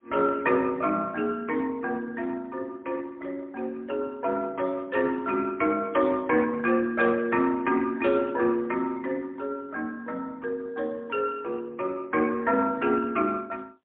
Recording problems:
phone line; 260 Hz to 3.3 kHz, AMR-NB, then MP3

